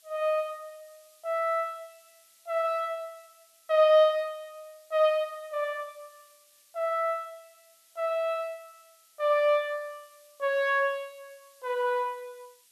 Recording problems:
hiss; SNR 30 dB

